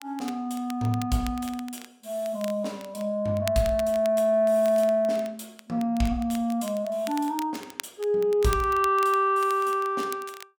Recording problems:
crackle; vinyl, SNR 18 dB

